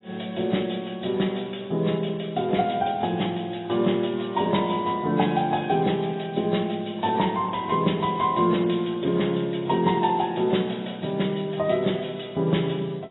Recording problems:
lossy compression; AAC, log-spectral distance 7 dB, nothing above 3.8 kHz

